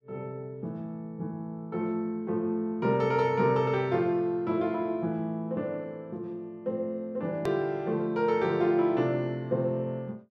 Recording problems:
click at an edit; at 7.5 s

